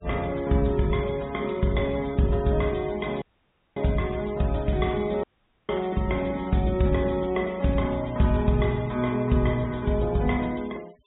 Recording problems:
low-pass filter; nothing above 4 kHz
denoising artefacts; signal-to-artefact ratio 23 dB
audio cutting out; at 3 s for 0.5 s and at 5 s

